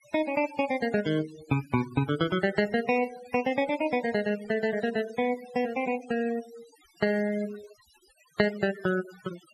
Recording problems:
denoising artefacts; signal-to-artefact ratio 15 dB

